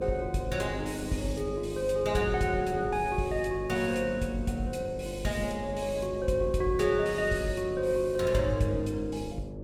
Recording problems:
mains hum; 50 Hz, harmonics up to 600 Hz, SNR 11 dB
wind noise; below 310 Hz, SNR 18 dB

